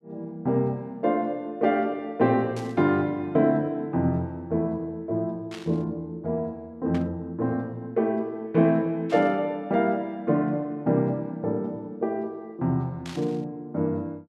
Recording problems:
burst of static; 5 times, first at 2.5 s; peak -10 dB vs average level

